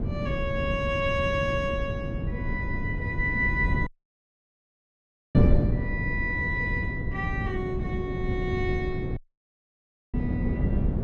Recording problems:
electrical hum; 60 Hz, harmonics up to 720 Hz, SNR 24 dB
wind on the microphone; below 190 Hz, SNR -1 dB
dropout; at 4 s for 1.5 s and at 9 s for 1 s

